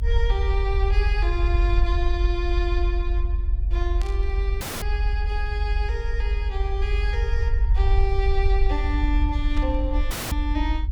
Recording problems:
hum; 60 Hz, harmonics up to 1.2 kHz, SNR 21 dB
low-frequency rumble; below 64 Hz, strongest tone 46 Hz, SNR -6 dB
burst of static; at 4 s and at 9.5 s; peak -5 dB vs average level
dropout; at 4.5 s and at 10 s

